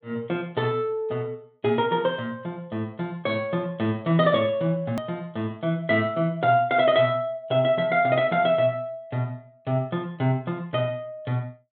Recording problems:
low-pass filter; nothing above 4 kHz
click at an edit; at 5 s

